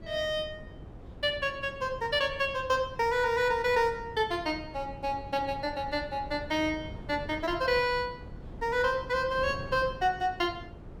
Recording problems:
wind on the microphone; below 270 Hz, SNR 15 dB

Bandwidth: 17 kHz